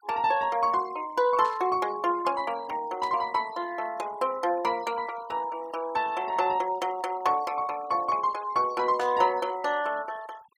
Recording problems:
noise reduction artefacts; signal-to-artefact ratio 21 dB
static burst; at 1.5 s, at 3 s and at 9 s; peak -13 dB vs average level

